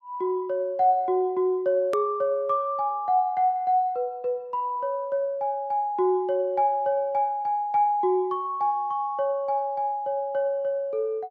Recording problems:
hard cut with a click; at 2 s

